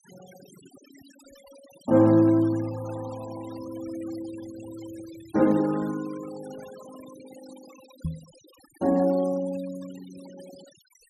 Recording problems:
denoising artefacts; signal-to-artefact ratio 22 dB
microphone thump; at 8 s; peak -2 dB vs average level

